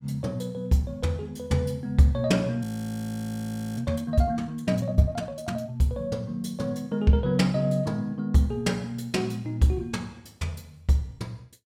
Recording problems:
frozen audio; at 2.5 s for 1 s

